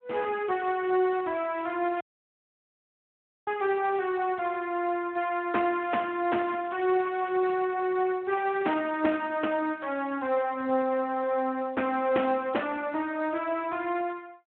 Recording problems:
phone line; 280 Hz to 2.9 kHz, Speex
crackling; at 1 s, at 6 s and from 6.5 to 7.5 s; loose cable, SNR 25 dB
audio cutting out; at 2 s for 1.5 s

